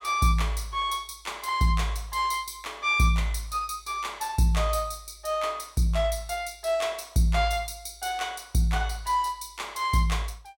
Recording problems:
none

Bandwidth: 17.5 kHz